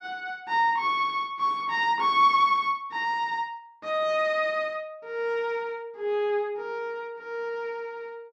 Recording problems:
none

